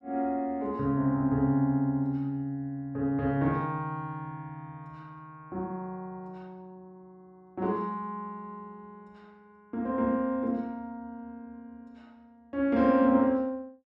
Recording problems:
none

